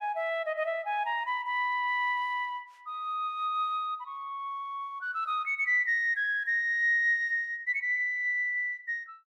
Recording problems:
none

